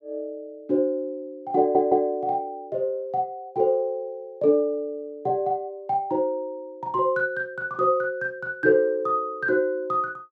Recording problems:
audio stuttering; at 1.5 s

